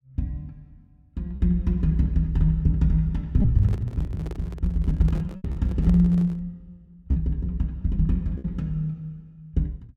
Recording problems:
packet loss; 3% of the sound replaced, filled with repeated pitch periods
microphone handling noise; from 3.5 to 6.5 s; peak -10 dB vs average level

